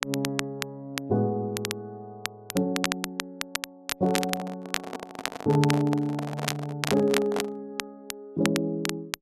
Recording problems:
crackle; vinyl, SNR 6 dB
handling noise; from 4 to 7.5 s; peak +1 dB vs average level

